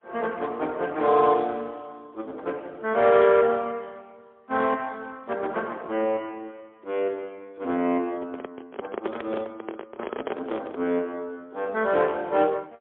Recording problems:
telephone audio; 240 Hz to 3.5 kHz, AMR-NB, then MP3
microphone handling noise; from 8 to 11 s; peak +1 dB vs average level

